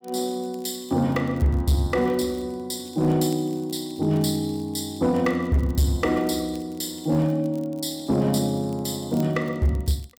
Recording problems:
distortion; hard clipping, uneven, signal-to-distortion ratio 12 dB
crackling; vinyl, SNR 28 dB

